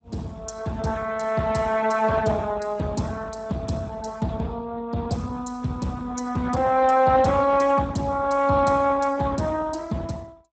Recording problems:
lossy codec; Speex, log-spectral distance 4 dB, nothing above 7.8 kHz

